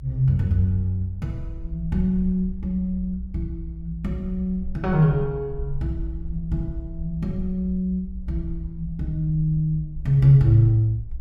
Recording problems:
rumble; below 62 Hz, SNR 12 dB

